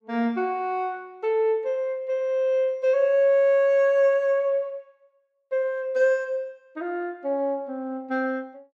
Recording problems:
none

